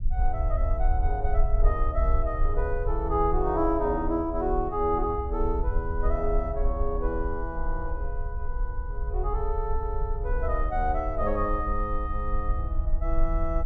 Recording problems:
low-frequency rumble; below 54 Hz, SNR 1 dB

